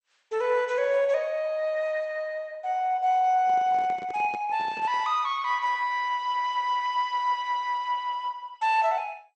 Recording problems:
codec artefacts; MP2, log-spectral distance 2 dB
handling noise; from 3.5 to 5 s; peak -11 dB vs average level

